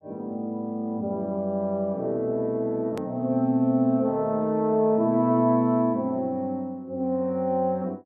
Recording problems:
click at an edit; at 3 s

